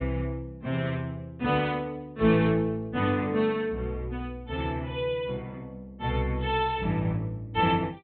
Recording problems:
low-pass filter; nothing above 4 kHz

